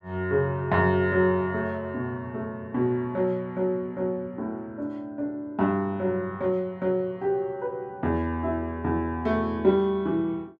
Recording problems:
none

